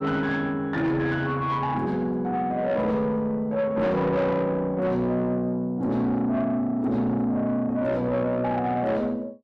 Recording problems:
distortion; soft clipping, signal-to-distortion ratio 11 dB

